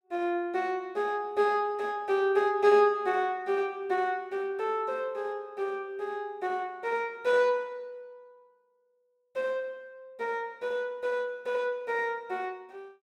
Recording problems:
none

